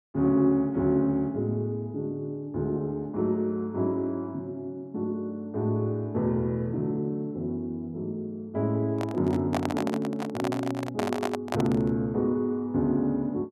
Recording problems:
microphone handling noise; from 9 to 12 s; peak +2 dB vs average level

